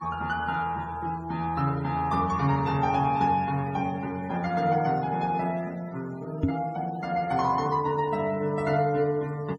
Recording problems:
denoising artefacts; signal-to-artefact ratio 23 dB
knock on the microphone; at 6.5 s; peak +6 dB vs average level

